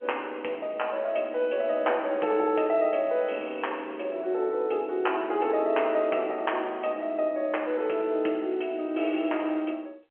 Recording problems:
telephone audio; 280 Hz to 3.1 kHz, G.711

